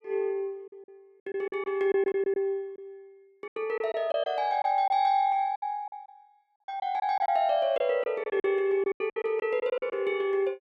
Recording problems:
lost packets; 12% of the sound replaced, filled with silence

